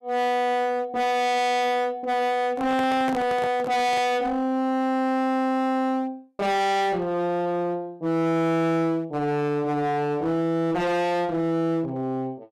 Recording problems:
distortion; hard clipping, uneven, signal-to-distortion ratio 6 dB
handling noise; from 2.5 to 4 s; peak -3 dB vs average level

